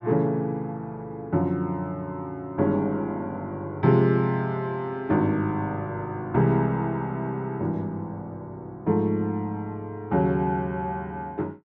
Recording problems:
none

